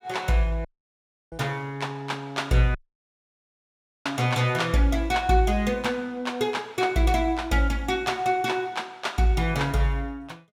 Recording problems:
dropout; at 0.5 s for 0.5 s and at 3 s for 1.5 s

